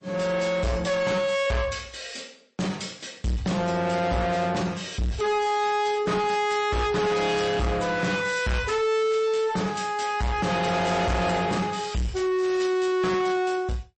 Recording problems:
lossy compression; MP3, log-spectral distance 3 dB, nothing above 8.2 kHz
distorted audio; soft clipping, signal-to-distortion ratio 7 dB

